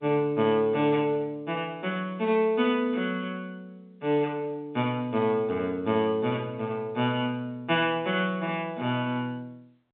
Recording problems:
telephone audio; 150 Hz to 3.7 kHz, G.711

